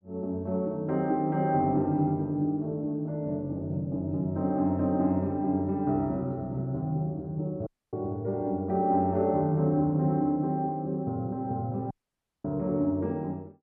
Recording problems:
audio cutting out; at 7.5 s and at 12 s for 0.5 s

